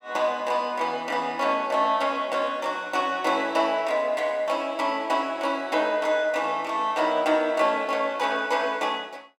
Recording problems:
none

